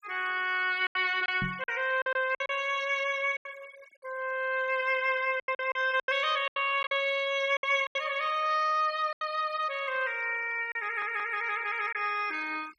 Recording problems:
denoising artefacts; signal-to-artefact ratio 23 dB
packet loss; 8% of the sound replaced, filled with silence
microphone thump; at 1.5 s; peak -2 dB vs average level
audio stuttering; at 11 s

